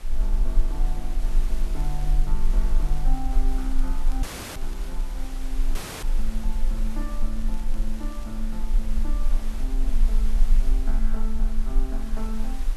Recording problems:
background hiss; slope -3 dB per octave, SNR 7 dB
low-frequency rumble; below 32 Hz, strongest tone 20 Hz, SNR -9 dB
crackle; from 1 to 5 s and at 7.5 s; loose cable, SNR 18 dB
audio cutting out; at 4 s and at 6 s
microphone handling noise; from 8.5 to 11 s; peak -11 dB vs average level

